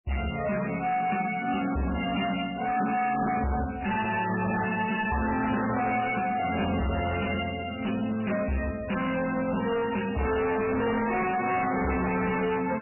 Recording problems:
lossy codec; MP3, log-spectral distance 8 dB, nothing above 2.4 kHz
distortion; hard clipping, signal-to-distortion ratio 6 dB

